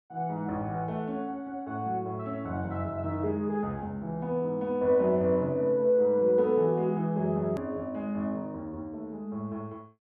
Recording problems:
click at an edit; at 7.5 s

